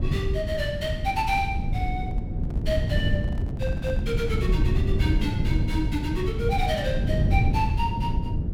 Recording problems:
rumble; below 140 Hz, SNR -3 dB
handling noise; from 2 to 5.5 s; peak -11 dB vs average level

